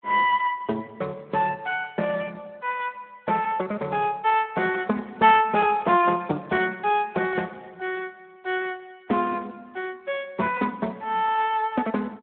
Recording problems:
telephone audio; 280 Hz to 3.5 kHz, Speex

